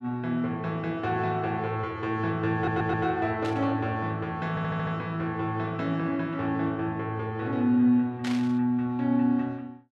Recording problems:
stutter; at 2.5 s and at 4.5 s
burst of static; at 3.5 s and at 8 s; peak -5 dB vs average level

